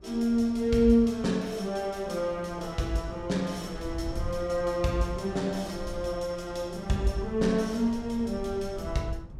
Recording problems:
wind noise; below 98 Hz, SNR 15 dB

